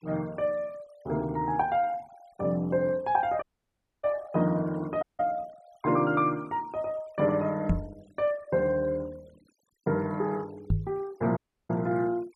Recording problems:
denoising artefacts; signal-to-artefact ratio 27 dB
audio cutting out; at 3.5 s for 0.5 s, at 5 s and at 11 s
microphone bump; at 7.5 s and at 11 s; peak +6 dB vs average level

